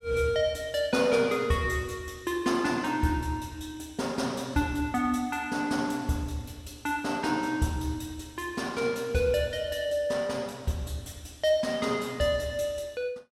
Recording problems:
none

